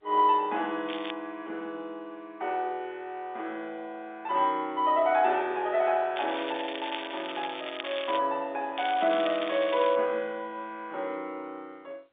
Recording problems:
phone line; 240 Hz to 3.8 kHz, G.711
crackle; at 1 s, from 6 to 8 s and from 9 to 10 s; loose cable, SNR 10 dB

